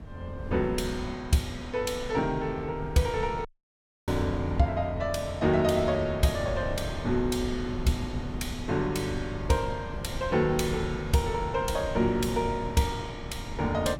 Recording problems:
wind noise; below 190 Hz, SNR 10 dB
dropout; at 3.5 s for 0.5 s

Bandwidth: 17 kHz